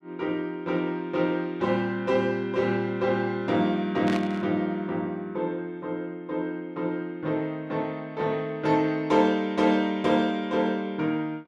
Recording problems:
static burst; at 4 s; peak -4 dB vs average level

